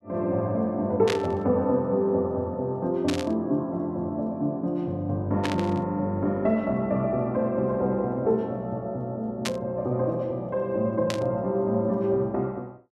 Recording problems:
burst of static; 5 times, first at 1 s; peak +1 dB vs average level

